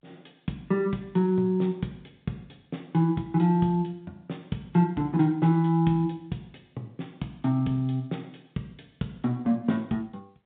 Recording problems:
telephone audio; 110 Hz to 3.9 kHz, G.711

